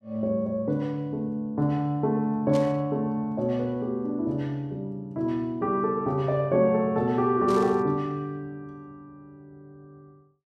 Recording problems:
static burst; at 2.5 s and at 7.5 s; peak -9 dB vs average level

